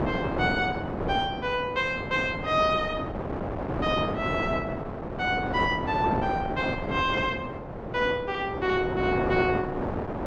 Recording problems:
wind on the microphone; below 740 Hz, SNR 4 dB

